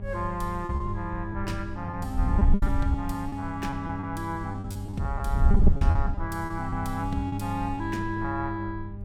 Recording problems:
hum; 50 Hz, harmonics up to 800 Hz, SNR 4 dB
wind noise; below 74 Hz, SNR -3 dB
packet loss; 10% of the sound replaced, filled with repeated pitch periods

